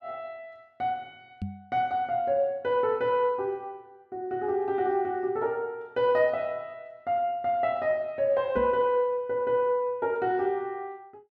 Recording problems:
knock on the microphone; at 1.5 s and at 8.5 s; peak -3 dB vs average level

